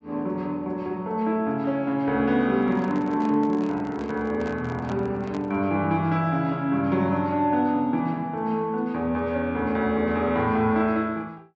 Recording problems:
treble cut off; nothing above 8 kHz
handling noise; from 2.5 to 5.5 s; peak -9 dB vs average level

